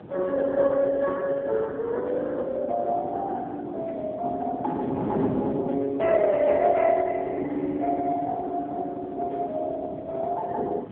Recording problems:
phone line; 260 Hz to 2.6 kHz, AMR-NB
wind noise; below 450 Hz, SNR 13 dB

